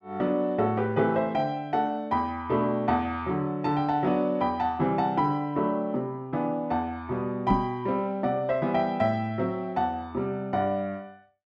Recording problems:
knock on the microphone; at 7.5 s; peak +6 dB vs average level

